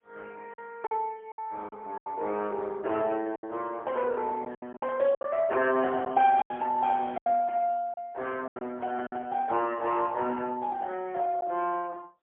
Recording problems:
telephone audio; 260 Hz to 4 kHz, AMR-NB, then MP3
packet loss; 7% of the sound replaced, filled with silence

